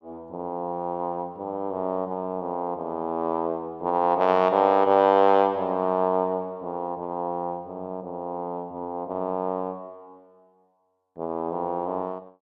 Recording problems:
none

